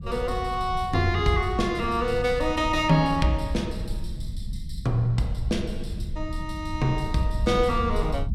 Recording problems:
rumble; below 88 Hz, SNR 9 dB

